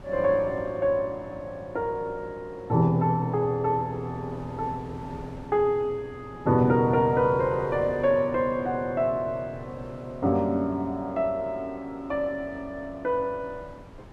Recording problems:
wind noise; below 600 Hz, SNR 20 dB

